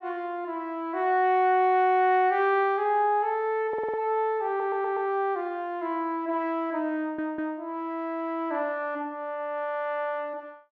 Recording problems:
audio stuttering; at 3.5 s, at 4.5 s and at 7 s

